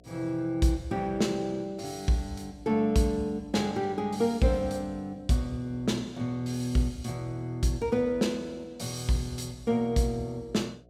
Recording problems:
hum; 60 Hz, harmonics up to 720 Hz, SNR 28 dB

